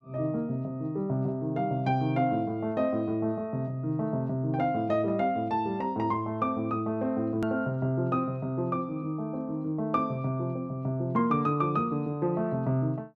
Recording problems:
edit click; at 7.5 s

